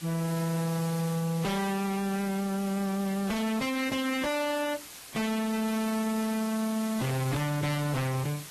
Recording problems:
codec artefacts; AAC, log-spectral distance 7 dB, nothing above 13.1 kHz
distorted audio; hard clipping, uneven, signal-to-distortion ratio 6 dB
background hiss; slope 0 dB per octave, SNR 12 dB

